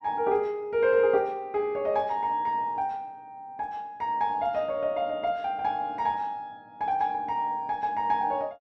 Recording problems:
none

